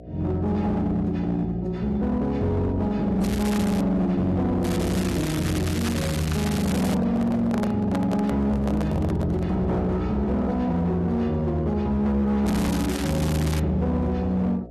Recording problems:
lossy codec; AAC, log-spectral distance 2 dB, nothing above 13.1 kHz
distortion; hard clipping, signal-to-distortion ratio 11 dB
hum; 60 Hz, harmonics up to 720 Hz, SNR 18 dB
crackling; at 3 s, from 4.5 to 7 s and from 12 to 14 s; loose cable, SNR 10 dB
microphone handling noise; from 6.5 to 9.5 s; peak -3 dB vs average level

